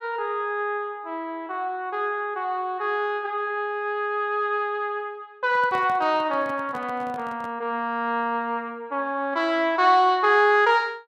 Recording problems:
handling noise; from 5.5 to 7.5 s; peak -11 dB vs average level

